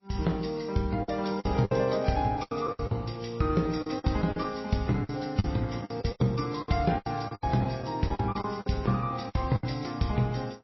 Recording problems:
lossy codec; AAC, then MP3, log-spectral distance 4 dB, nothing above 5.7 kHz
packet loss; 13% of the sound replaced, filled with the last packet

